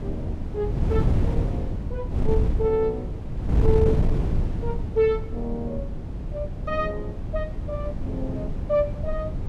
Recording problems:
wind on the microphone; below 150 Hz, SNR -1 dB

